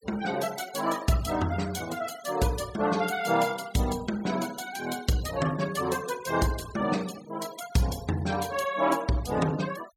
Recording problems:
denoising artefacts; signal-to-artefact ratio 15 dB

